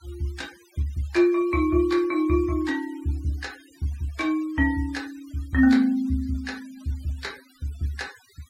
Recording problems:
denoising artefacts; signal-to-artefact ratio 23 dB

